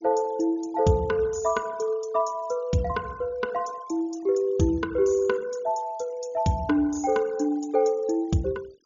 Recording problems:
treble cut off; nothing above 7 kHz
denoising artefacts; signal-to-artefact ratio 25 dB

